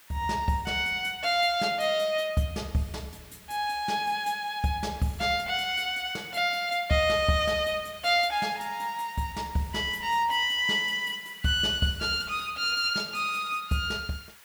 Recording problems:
background hiss; SNR 23 dB

